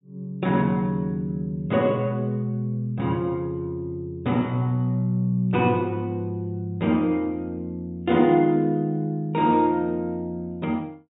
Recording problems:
low-pass filter; nothing above 4 kHz

